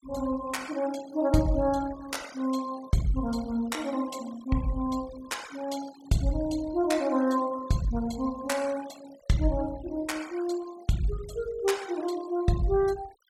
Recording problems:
noise reduction artefacts; signal-to-artefact ratio 18 dB

